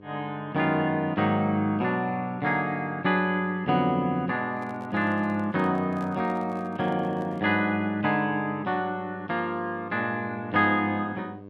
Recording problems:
hum; 50 Hz, harmonics up to 1.1 kHz, SNR 19 dB
handling noise; from 4.5 to 7.5 s; peak -12 dB vs average level

